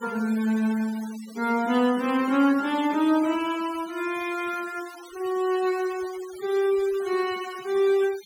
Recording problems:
denoising artefacts; signal-to-artefact ratio 18 dB

